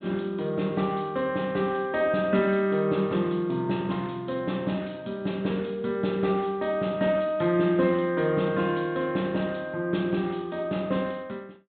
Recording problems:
low-pass filter; nothing above 4 kHz

